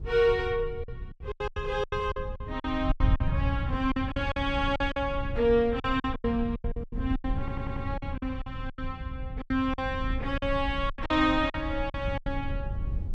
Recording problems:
low-frequency rumble; below 100 Hz, SNR 9 dB
wind noise; below 100 Hz, SNR 8 dB
lost packets; 15% of the sound replaced, filled with silence
audio stuttering; at 7.5 s

